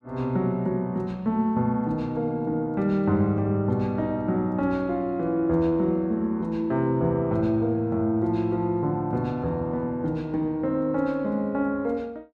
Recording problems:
none

